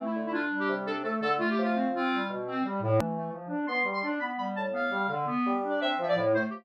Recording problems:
edit click; at 3 s

